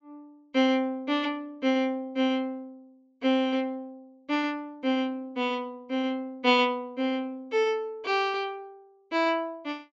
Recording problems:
treble missing; nothing above 8 kHz

